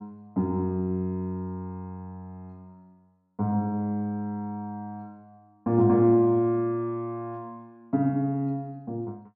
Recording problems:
none

